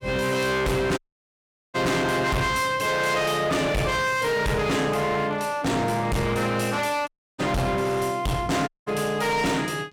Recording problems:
distorted audio; hard clipping, uneven, signal-to-distortion ratio 6 dB
dropout; at 1 s for 1 s, at 7 s and at 8.5 s

